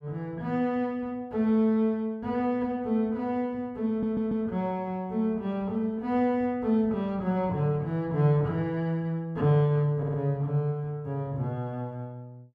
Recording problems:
stutter; at 4 s and at 10 s

